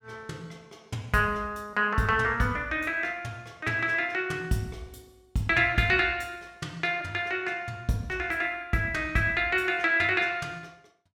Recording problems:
none

